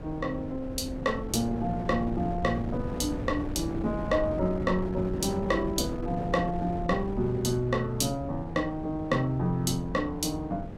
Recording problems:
wind on the microphone; below 330 Hz, SNR 8 dB

